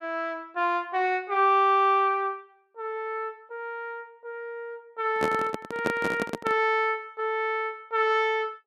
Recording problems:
microphone handling noise; from 5 to 6.5 s; peak +2 dB vs average level

